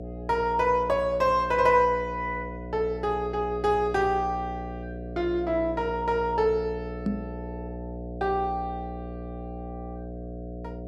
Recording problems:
hum; 60 Hz, harmonics up to 720 Hz, SNR 11 dB
knock on the microphone; at 7 s; peak +2 dB vs average level

